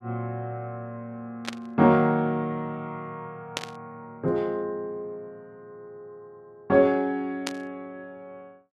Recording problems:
static burst; at 1.5 s, at 3.5 s and at 7.5 s; peak +1 dB vs average level

